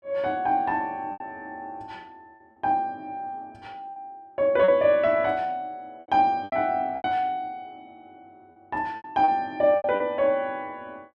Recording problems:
lost packets; 7% of the sound replaced, filled with repeated pitch periods

